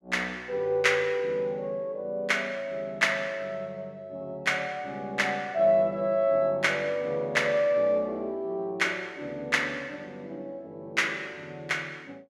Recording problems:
none

